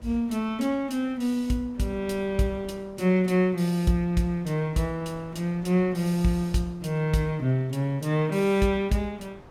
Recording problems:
wind noise; below 680 Hz, SNR 25 dB

